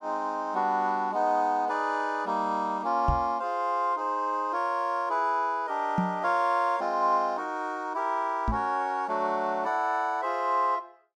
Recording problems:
microphone bump; at 3 s, at 6 s and at 8.5 s; peak +4 dB vs average level

